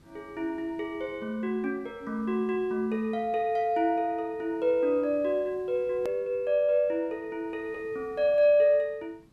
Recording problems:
hiss; slope -5 dB per octave, SNR 30 dB
click at an edit; at 6 s

